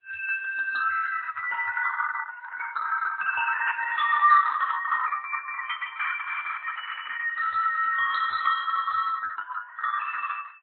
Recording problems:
lossy compression; Opus, then MP3, log-spectral distance 4 dB, nothing above 4 kHz

